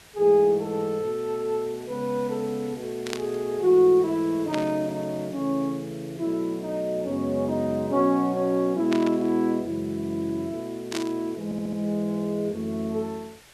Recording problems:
hiss; slope -1 dB per octave, SNR 23 dB
burst of static; 4 times, first at 3 s; peak -2 dB vs average level
audio stuttering; at 11 s

